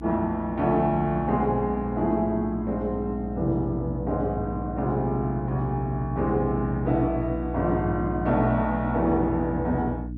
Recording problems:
mains hum; 60 Hz, harmonics up to 300 Hz, SNR 8 dB

